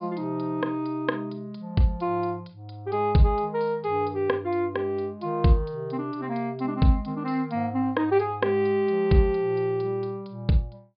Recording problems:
treble cut off; nothing above 4.9 kHz

